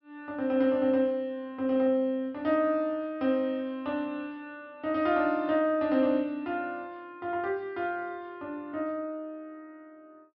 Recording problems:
treble missing; nothing above 5.5 kHz

